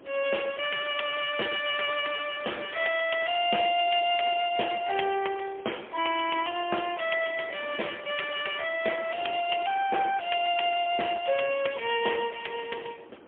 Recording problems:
telephone audio; 280 Hz to 3.3 kHz, AMR-NB, then MP3
wind on the microphone; below 750 Hz, SNR 22 dB

